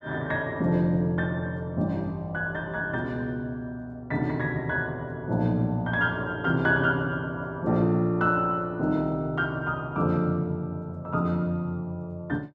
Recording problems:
none

